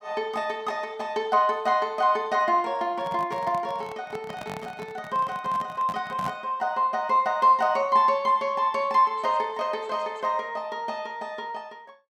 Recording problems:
microphone handling noise; from 3 to 6.5 s; peak -6 dB vs average level

